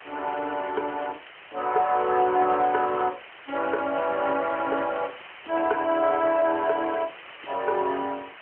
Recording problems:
telephone audio; 280 Hz to 3.2 kHz, AMR-NB
hiss; SNR 18 dB

